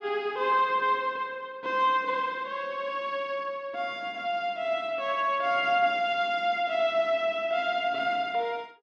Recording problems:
none

